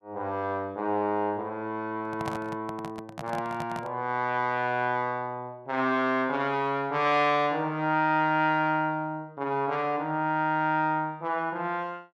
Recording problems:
microphone handling noise; from 2 to 4 s; peak -3 dB vs average level

